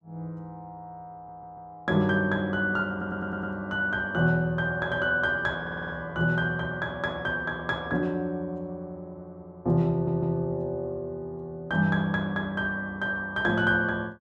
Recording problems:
stutter; 4 times, first at 1 s

